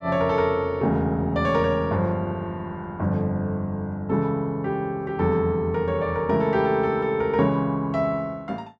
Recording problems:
none

